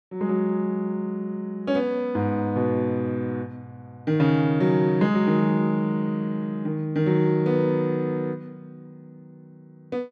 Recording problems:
none

